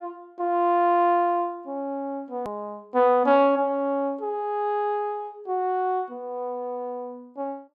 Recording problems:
click at an edit; at 2.5 s

